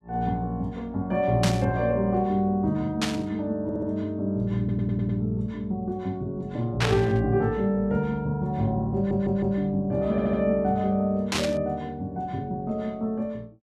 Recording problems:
static burst; 4 times, first at 1.5 s; peak +4 dB vs average level
audio stuttering; 4 times, first at 3.5 s

